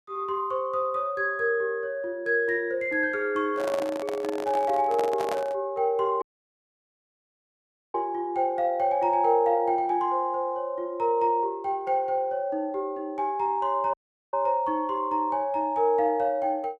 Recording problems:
handling noise; from 3.5 to 5.5 s; peak -1 dB vs average level
audio cutting out; at 6 s for 1.5 s and at 14 s

